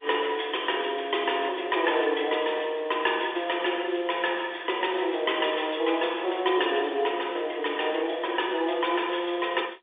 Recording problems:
phone line; 300 Hz to 3.6 kHz, G.711

